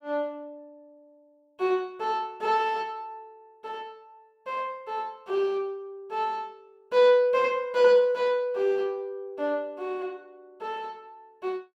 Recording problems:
none

